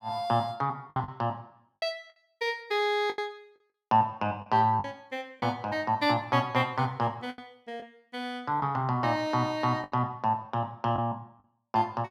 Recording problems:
lost packets; 5% of the sound replaced, filled with the last packet

